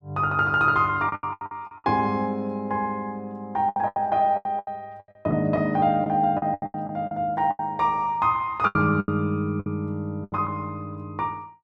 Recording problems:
packet loss; 12% of the sound replaced, filled with the last packet

